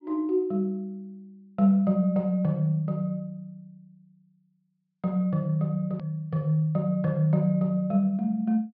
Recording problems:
low-pass filter; nothing above 5.5 kHz
edit click; at 6 s

